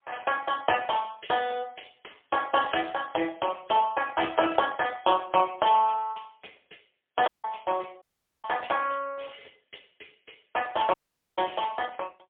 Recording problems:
phone line; 300 Hz to 3.4 kHz, AMR-NB, then MP3
audio cutting out; at 7.5 s, at 8 s and at 11 s

